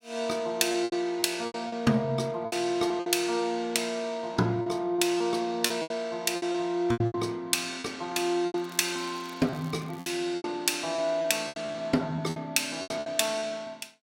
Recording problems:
packet loss; 11% of the sound replaced, filled with repeated pitch periods
crackling; from 8.5 to 10 s; loose cable, SNR 24 dB

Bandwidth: 16.5 kHz